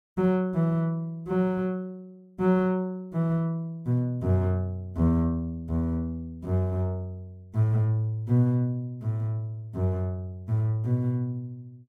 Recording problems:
none

